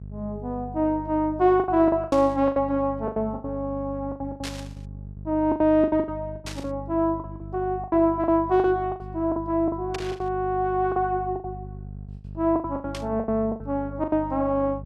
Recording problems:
hum; 50 Hz, harmonics up to 450 Hz, SNR 14 dB
packet loss; 15% of the sound replaced, filled with the last packet
burst of static; 5 times, first at 2 s; peak -5 dB vs average level

